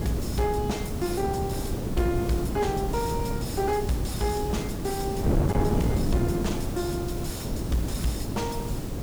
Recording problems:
distorted audio; soft clipping, signal-to-distortion ratio 10 dB
background hiss; SNR 12 dB
wind on the microphone; below 300 Hz, SNR 0 dB
crackle; from 3 to 8 s; loose cable, SNR 25 dB

